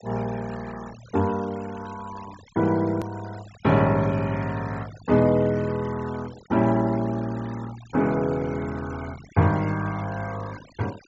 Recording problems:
treble cut off; nothing above 8 kHz
denoising artefacts; signal-to-artefact ratio 20 dB
click at an edit; at 3 s

